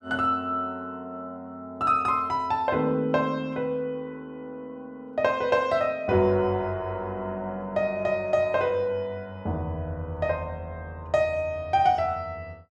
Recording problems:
none

